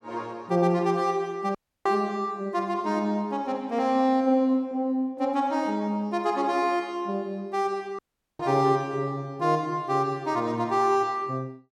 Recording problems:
dropout; at 1.5 s and at 8 s

